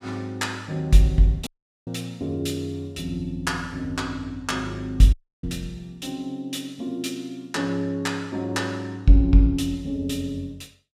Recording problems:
audio cutting out; at 1.5 s and at 5 s

